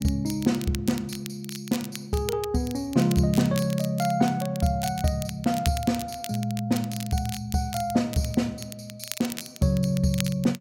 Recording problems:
crackling; vinyl, SNR 12 dB

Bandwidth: 16 kHz